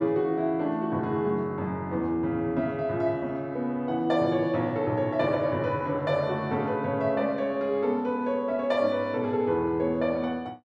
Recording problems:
none

